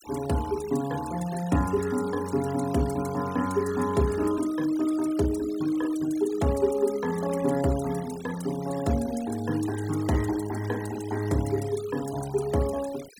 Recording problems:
noise reduction artefacts; signal-to-artefact ratio 17 dB

